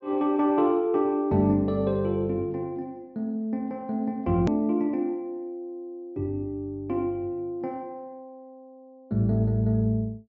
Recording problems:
treble cut off; nothing above 8 kHz
hard cut with a click; at 4.5 s

